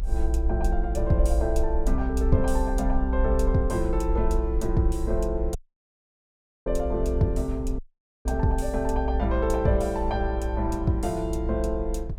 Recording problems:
low-frequency rumble; below 58 Hz, SNR 2 dB
wind on the microphone; below 110 Hz, SNR 15 dB
dropout; at 5.5 s for 1 s and at 8 s

